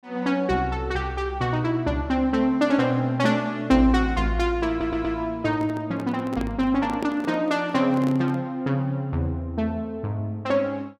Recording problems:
audio stuttering; at 4.5 s
microphone handling noise; from 5.5 to 8.5 s; peak -1 dB vs average level

